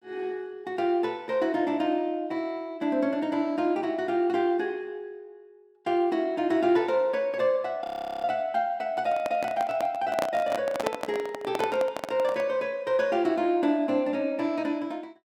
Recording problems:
audio freezing; at 8 s
handling noise; from 9 to 12 s; peak +4 dB vs average level

